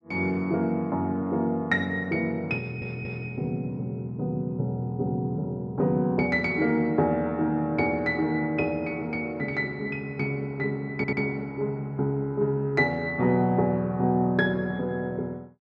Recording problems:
audio stuttering; at 2.5 s and at 11 s

